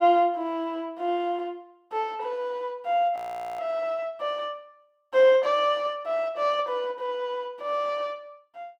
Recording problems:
frozen audio; at 3 s

